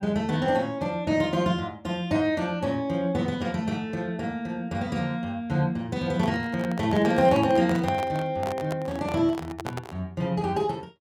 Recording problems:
handling noise; from 6 to 10 s; peak -3 dB vs average level

